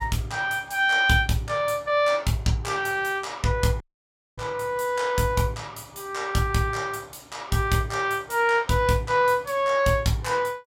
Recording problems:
audio cutting out; at 4 s for 0.5 s

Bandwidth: 16 kHz